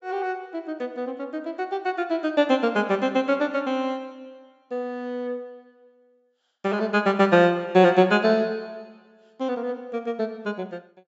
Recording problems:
treble missing; nothing above 8 kHz

